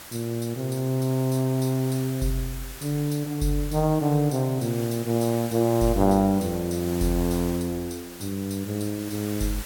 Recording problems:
background hiss; slope -1 dB per octave, SNR 14 dB

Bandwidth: 17 kHz